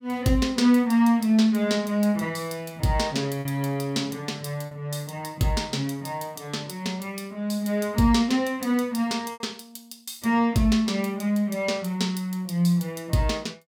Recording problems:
packet loss; 1.5% of the sound replaced, filled with repeated pitch periods

